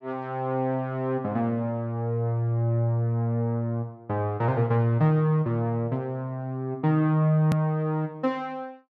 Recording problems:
click at an edit; at 7.5 s

